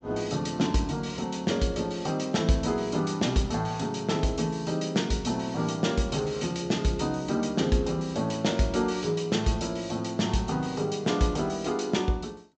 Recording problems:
low-pass filter; nothing above 8 kHz

